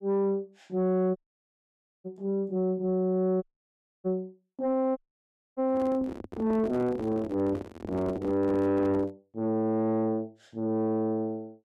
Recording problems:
distortion; soft clipping, signal-to-distortion ratio 10 dB
dropout; at 1 s for 1 s, at 3.5 s for 0.5 s and at 5 s for 0.5 s
handling noise; from 5.5 to 9 s; peak -4 dB vs average level

